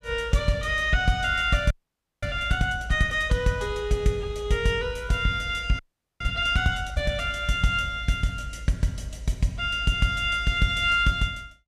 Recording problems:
audio freezing; at 1.5 s for 0.5 s and at 6 s

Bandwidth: 15 kHz